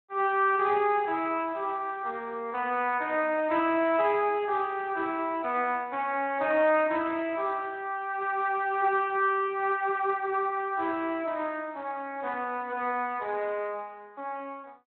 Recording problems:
phone line; 260 Hz to 3.1 kHz, Speex

